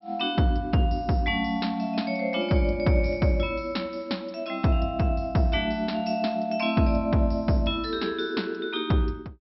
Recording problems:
low-pass filter; nothing above 5.6 kHz

